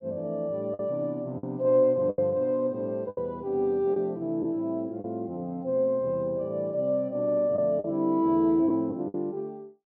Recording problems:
packet loss; 5% of the sound replaced, filled with the last packet

